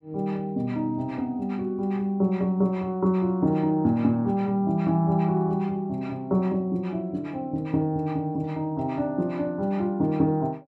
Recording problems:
none

